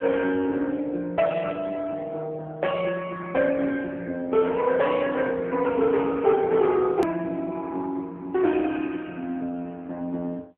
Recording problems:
phone line; 190 Hz to 3.3 kHz, AMR-NB
hard cut with a click; at 7 s

